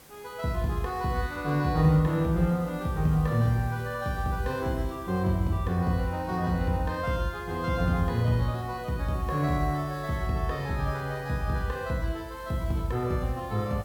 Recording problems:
hiss; slope -4 dB per octave, SNR 24 dB

